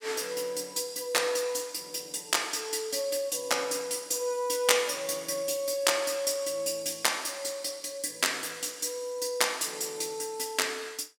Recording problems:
none

